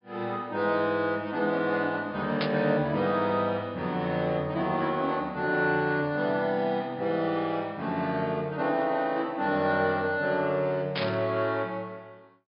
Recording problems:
treble missing; nothing above 5.5 kHz
burst of static; at 2.5 s and at 11 s; peak +1 dB vs average level

